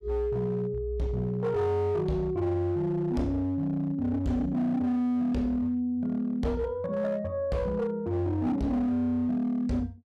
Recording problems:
distortion; hard clipping, signal-to-distortion ratio 12 dB

